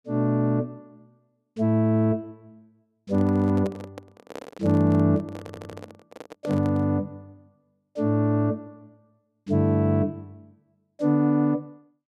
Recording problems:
microphone handling noise; from 3 to 7 s; peak -8 dB vs average level
stutter; at 5.5 s

